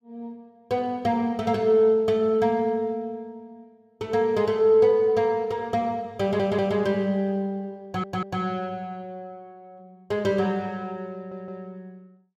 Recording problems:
audio stuttering; at 6 s, at 8 s and at 11 s

